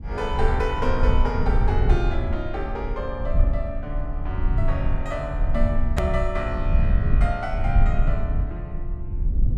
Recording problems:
low-frequency rumble; below 70 Hz, SNR -3 dB
edit click; at 6 s

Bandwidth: 12.5 kHz